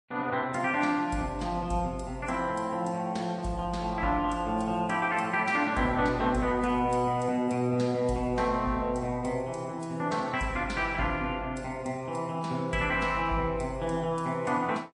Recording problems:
lossy codec; MP3, log-spectral distance 2 dB, nothing above 8.2 kHz

